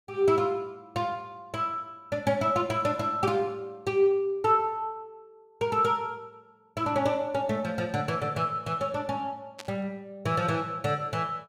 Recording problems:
burst of static; at 9.5 s; peak -8 dB vs average level

